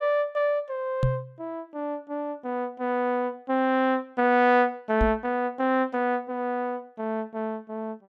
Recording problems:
knock on the microphone; at 1 s and at 5 s; peak +5 dB vs average level

